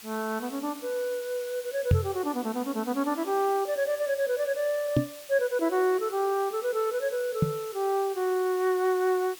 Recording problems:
hiss; slope +2 dB per octave, SNR 16 dB
microphone bump; at 2 s, at 5 s and at 7.5 s; peak +9 dB vs average level

